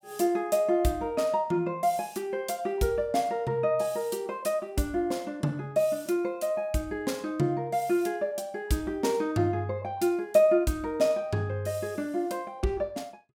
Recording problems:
none

